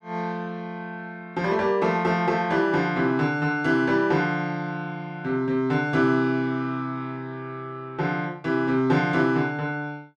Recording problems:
none

